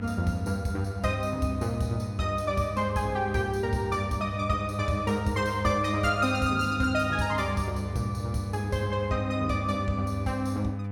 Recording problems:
hum; 50 Hz, harmonics up to 1 kHz, SNR 6 dB

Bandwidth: 17 kHz